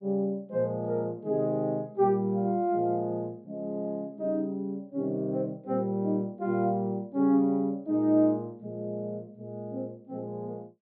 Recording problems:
treble cut off; nothing above 4.6 kHz

